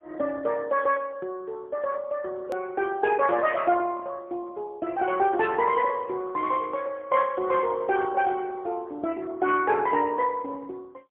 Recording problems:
phone line; 280 Hz to 3.1 kHz, AMR-NB, then MP3
hard cut with a click; at 2.5 s

